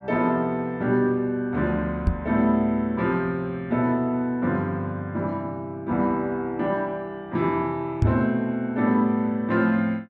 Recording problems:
knock on the microphone; at 2 s and at 8 s; peak +7 dB vs average level

